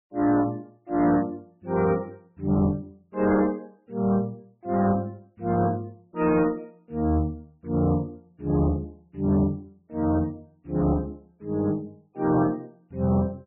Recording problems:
lossy codec; MP3, log-spectral distance 2 dB, nothing above 2.3 kHz
distortion; soft clipping, signal-to-distortion ratio 11 dB

